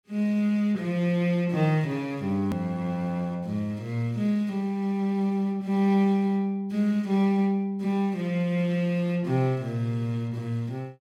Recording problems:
click at an edit; at 2.5 s

